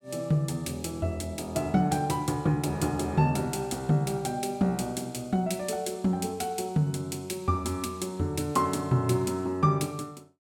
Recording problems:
none

